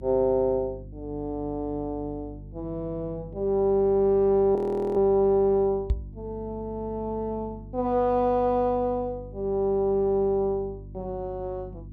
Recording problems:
electrical hum; 50 Hz, harmonics up to 350 Hz, SNR 17 dB
frozen audio; at 4.5 s
microphone bump; at 6 s; peak +3 dB vs average level

